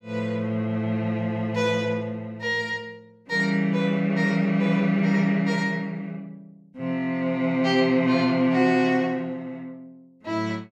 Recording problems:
none

